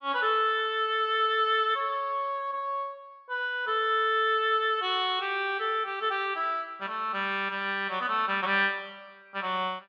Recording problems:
none

